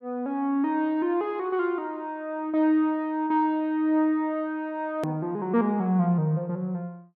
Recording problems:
edit click; at 5 s

